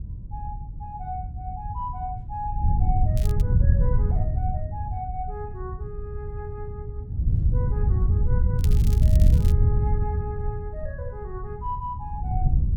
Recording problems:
wind noise; below 98 Hz, SNR -12 dB
crackle; at 3 s and at 8.5 s; loose cable, SNR 8 dB

